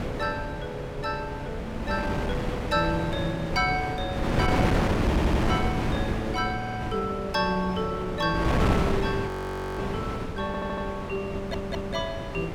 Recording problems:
wind noise; below 640 Hz, SNR 0 dB
audio stuttering; 4 times, first at 5 s
frozen audio; at 9.5 s for 0.5 s

